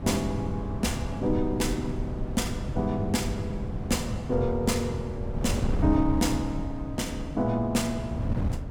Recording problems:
wind noise; below 170 Hz, SNR 4 dB

